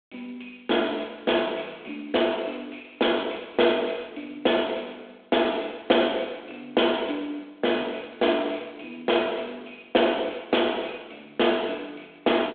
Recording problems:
telephone audio; 260 Hz to 3.5 kHz, G.726

